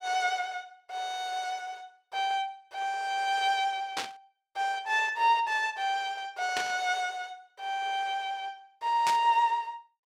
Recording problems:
burst of static; at 4 s, at 6.5 s and at 9 s; peak +1 dB vs average level

